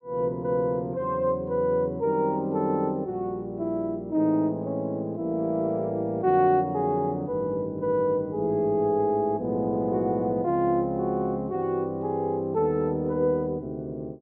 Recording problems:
low-pass filter; nothing above 4.7 kHz

